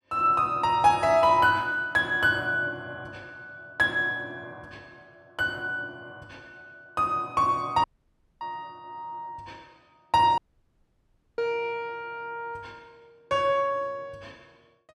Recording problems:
dropout; at 8 s for 0.5 s and at 10 s for 1 s

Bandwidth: 13.5 kHz